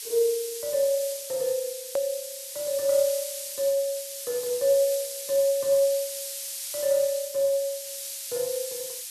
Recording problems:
hiss; slope +7 dB per octave, SNR 7 dB
hard cut with a click; at 2 s

